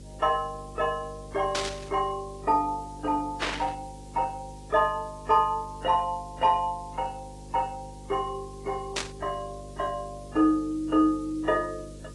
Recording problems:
lossy compression; AAC, log-spectral distance 6 dB
electrical hum; 50 Hz, harmonics up to 550 Hz, SNR 18 dB
hiss; slope +2 dB per octave, SNR 26 dB
burst of static; at 1.5 s, at 3.5 s and at 9 s; peak +3 dB vs average level

